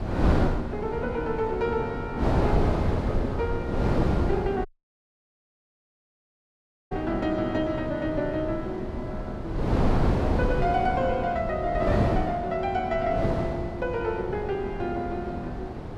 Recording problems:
wind noise; below 430 Hz, SNR 0 dB
dropout; at 4.5 s for 2.5 s

